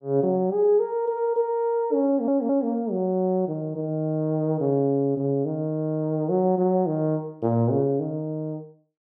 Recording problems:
audio stuttering; at 2 s

